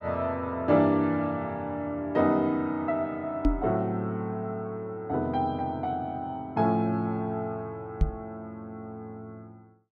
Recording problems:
knock on the microphone; at 3.5 s and at 8 s; peak +7 dB vs average level

